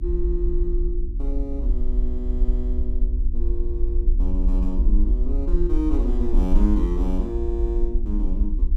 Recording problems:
hum; 60 Hz, harmonics up to 360 Hz, SNR 13 dB
low-frequency rumble; below 48 Hz, SNR -5 dB

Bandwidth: 14.5 kHz